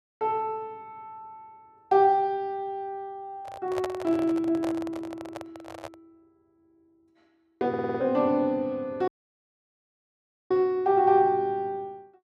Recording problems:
handling noise; from 3.5 to 6 s; peak -4 dB vs average level
stutter; at 7.5 s
dropout; at 9 s for 1.5 s

